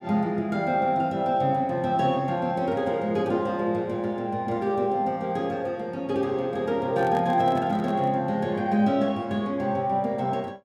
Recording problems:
microphone handling noise; from 7 to 8 s; peak -9 dB vs average level

